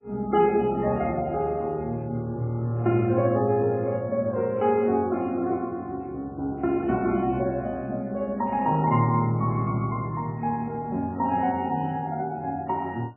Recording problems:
codec artefacts; MP3, log-spectral distance 2 dB, nothing above 2.5 kHz

